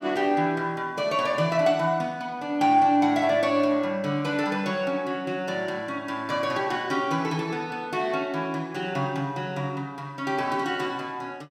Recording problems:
none

